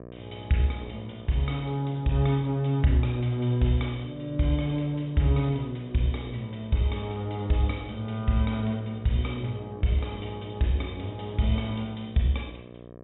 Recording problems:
low-pass filter; nothing above 3.8 kHz
hum; 60 Hz, harmonics up to 1.3 kHz, SNR 18 dB

